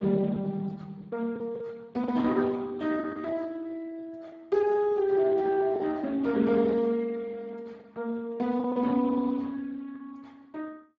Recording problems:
codec artefacts; Speex, log-spectral distance 3 dB
lost packets; 5% of the sound replaced, filled with the last packet

